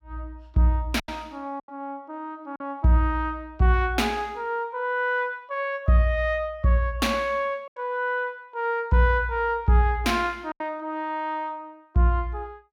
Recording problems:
lost packets; 3% of the sound replaced, filled with silence

